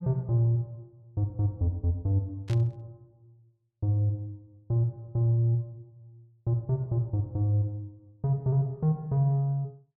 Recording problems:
static burst; at 2.5 s; peak -12 dB vs average level

